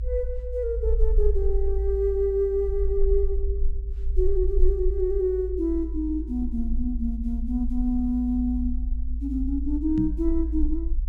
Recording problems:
rumble; below 54 Hz, strongest tone 20 Hz, SNR 2 dB
microphone thump; at 10 s; peak +2 dB vs average level

